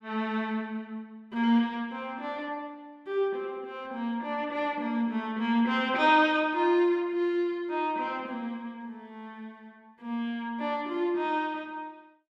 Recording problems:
none

